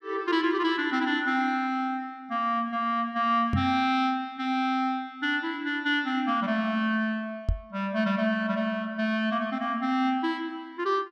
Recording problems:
knock on the microphone; at 3.5 s and at 7.5 s; peak +4 dB vs average level

